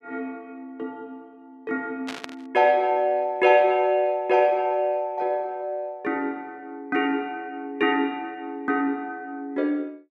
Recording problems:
burst of static; at 2 s; peak -6 dB vs average level

